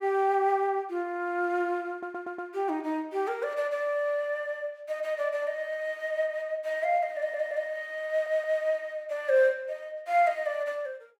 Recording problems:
audio stuttering; at 2 s, at 7 s and at 8 s

